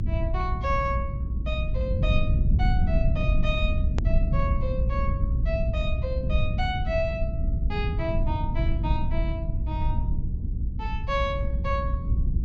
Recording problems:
treble cut off; nothing above 8 kHz
low-frequency rumble; below 98 Hz, SNR -5 dB
hard cut with a click; at 4 s

